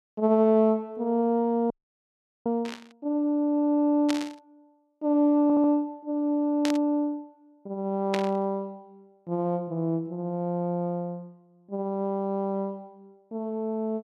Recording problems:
frozen audio; at 1.5 s for 1 s
static burst; 4 times, first at 2.5 s; peak -1 dB vs average level
stutter; at 5.5 s

